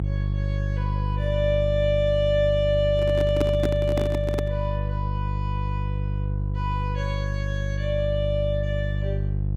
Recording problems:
electrical hum; 50 Hz, harmonics up to 350 Hz, SNR 1 dB
handling noise; from 3 to 4.5 s; peak +4 dB vs average level

